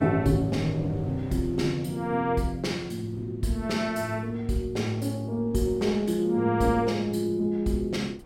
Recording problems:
wind on the microphone; below 360 Hz, SNR 21 dB

